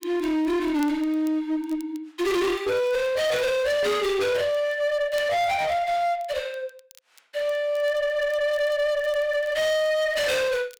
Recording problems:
distortion; hard clipping, uneven, signal-to-distortion ratio 7 dB
crackling; vinyl, SNR 29 dB

